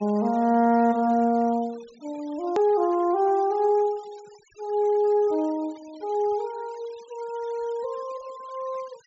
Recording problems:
low-pass filter; nothing above 8 kHz
noise reduction artefacts; signal-to-artefact ratio 26 dB
hard cut with a click; at 2.5 s

